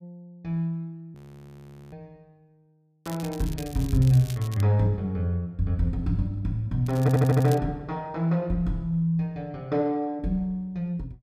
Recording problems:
frozen audio; at 1 s for 1 s
crackling; from 3 to 4.5 s and at 7 s; loose cable, SNR 18 dB
stutter; at 7 s

